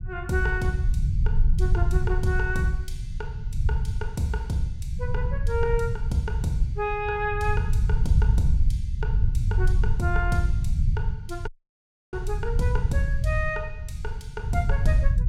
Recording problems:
rumble; below 90 Hz, SNR -2 dB
dropout; at 11 s for 0.5 s

